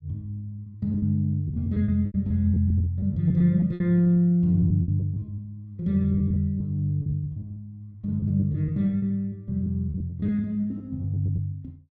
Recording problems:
packet loss; 16% of the sound replaced, filled with repeated pitch periods

